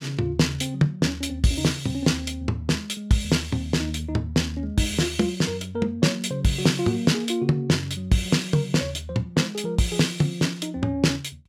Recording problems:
none

